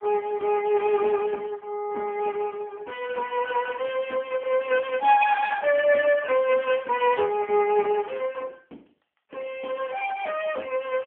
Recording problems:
telephone audio; 240 Hz to 2.5 kHz, AMR-NB

